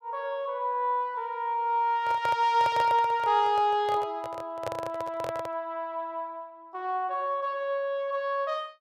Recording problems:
microphone handling noise; from 2 to 5.5 s; peak -2 dB vs average level

